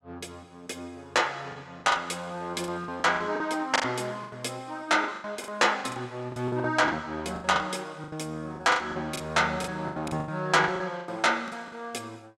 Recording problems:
packet loss; 14% of the sound replaced, filled with the last packet

